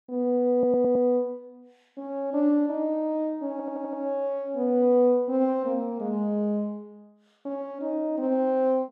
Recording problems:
audio stuttering; at 0.5 s and at 3.5 s

